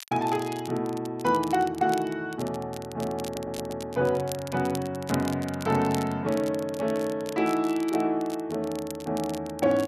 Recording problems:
crackling; vinyl, SNR 16 dB
audio stuttering; at 3.5 s

